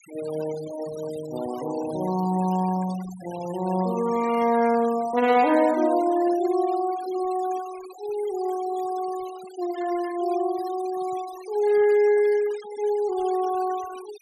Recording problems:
denoising artefacts; signal-to-artefact ratio 18 dB

